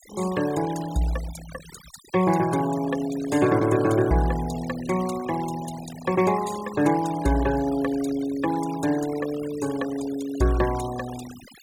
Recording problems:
denoising artefacts; signal-to-artefact ratio 16 dB

